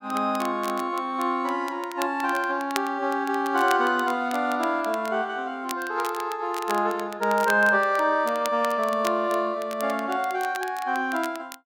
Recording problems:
crackle; vinyl, SNR 16 dB

